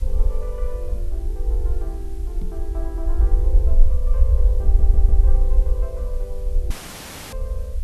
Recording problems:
background hiss; slope 0 dB per octave, SNR 16 dB
low-frequency rumble; below 56 Hz, SNR -14 dB
knock on the microphone; at 2.5 s; peak +8 dB vs average level
audio stuttering; at 4.5 s
audio cutting out; at 6.5 s for 0.5 s; filled with static

